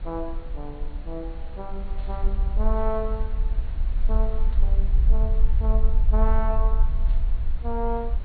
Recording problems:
treble missing; nothing above 4.4 kHz
hiss; SNR 13 dB
rumble; below 48 Hz, SNR -8 dB
static burst; at 2 s, at 4.5 s and at 7 s; peak -16 dB vs average level

